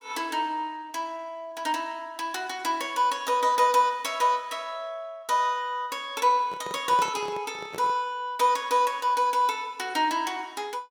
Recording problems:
microphone handling noise; from 6.5 to 8 s; peak -6 dB vs average level

